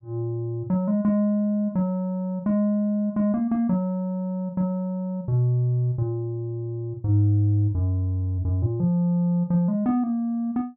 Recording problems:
none

